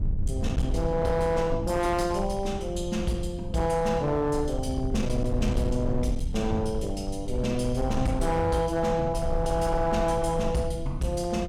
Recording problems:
distortion; hard clipping, signal-to-distortion ratio 12 dB
rumble; below 86 Hz, SNR 7 dB

